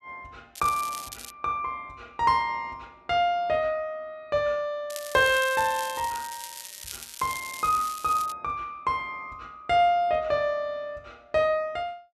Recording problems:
crackling; at 0.5 s and from 5 to 8.5 s; loose cable, SNR 12 dB

